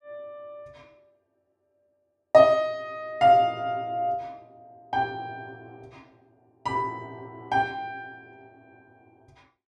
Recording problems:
none

